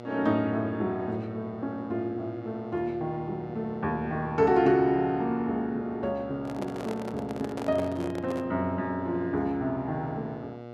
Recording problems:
electrical hum; 60 Hz, harmonics up to 1.6 kHz, SNR 14 dB
microphone handling noise; from 6.5 to 8.5 s; peak -3 dB vs average level

